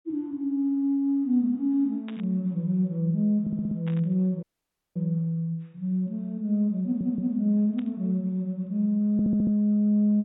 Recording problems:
treble cut off; nothing above 4 kHz
burst of static; at 2 s, at 4 s and at 8 s; peak -14 dB vs average level
stutter; at 3.5 s, at 7 s and at 9 s
audio cutting out; at 4.5 s for 0.5 s

